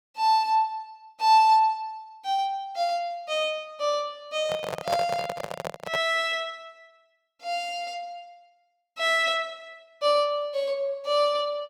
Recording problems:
handling noise; from 4.5 to 6 s; peak +2 dB vs average level

